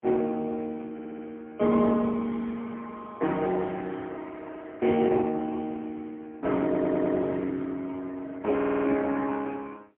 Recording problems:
telephone audio; 150 Hz to 3.4 kHz, AMR-NB, then MP3
stutter; at 1 s, at 6.5 s and at 8.5 s

